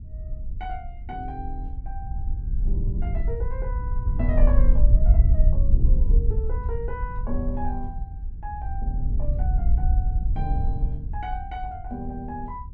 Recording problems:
wind on the microphone; below 60 Hz, SNR -10 dB

